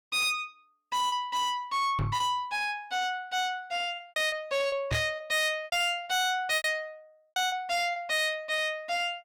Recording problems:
distortion; soft clipping, signal-to-distortion ratio 7 dB
packet loss; 8% of the sound replaced, filled with repeated pitch periods
knock on the microphone; at 2 s and at 5 s; peak +4 dB vs average level

